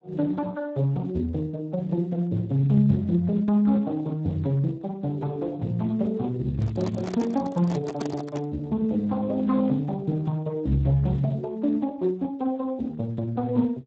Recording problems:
lossy compression; Speex, log-spectral distance 2 dB
handling noise; from 6.5 to 8.5 s; peak -2 dB vs average level

